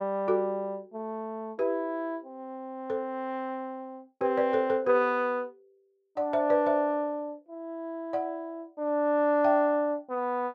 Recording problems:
none

